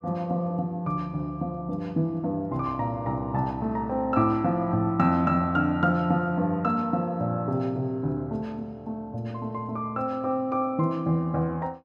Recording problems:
none

